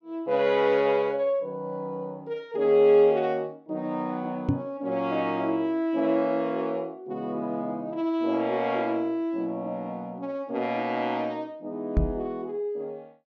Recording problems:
treble cut off; nothing above 8 kHz
knock on the microphone; at 4.5 s and at 12 s; peak +6 dB vs average level

